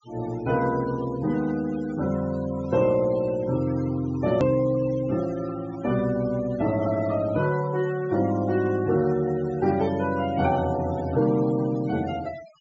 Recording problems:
low-pass filter; nothing above 8 kHz
denoising artefacts; signal-to-artefact ratio 18 dB
click at an edit; at 4.5 s

